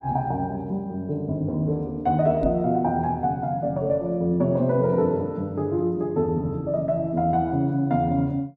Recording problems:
microphone thump; at 2.5 s; peak +1 dB vs average level

